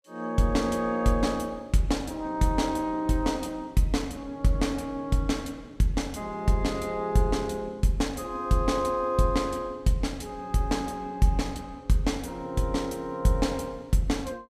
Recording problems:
none

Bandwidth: 15 kHz